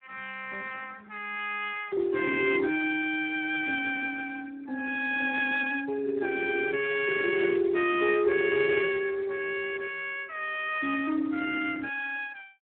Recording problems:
telephone audio; 280 Hz to 3.3 kHz, Speex

